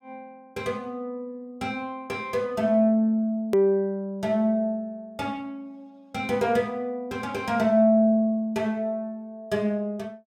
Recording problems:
hard cut with a click; at 3.5 s

